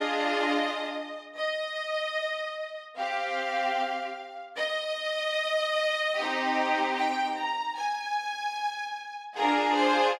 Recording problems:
none

